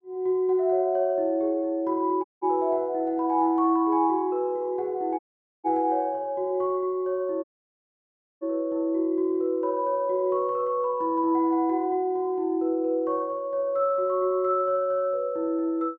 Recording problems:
dropout; at 2 s, at 5 s and at 7.5 s for 1 s

